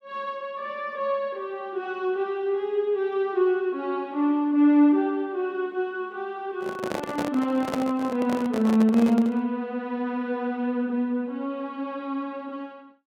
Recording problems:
handling noise; from 6.5 to 9.5 s; peak -1 dB vs average level

